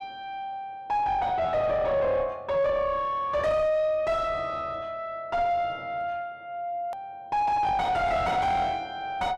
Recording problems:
distorted audio; soft clipping, signal-to-distortion ratio 6 dB
hard cut with a click; at 7 s

